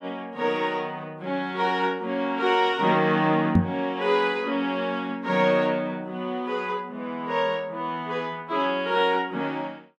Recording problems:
knock on the microphone; at 3.5 s; peak +8 dB vs average level

